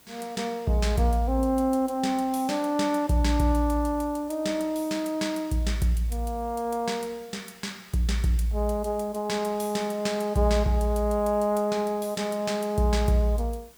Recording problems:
background hiss; slope -2 dB per octave, SNR 26 dB

